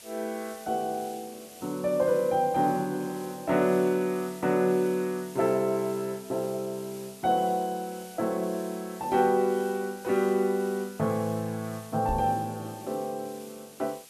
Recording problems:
hiss; slope +1 dB per octave, SNR 19 dB
microphone bump; at 12 s; peak -2 dB vs average level

